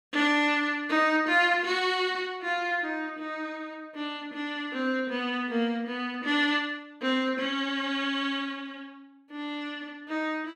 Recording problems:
none

